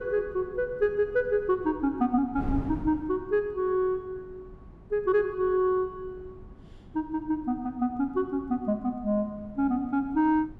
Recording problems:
wind on the microphone; below 200 Hz, SNR 17 dB

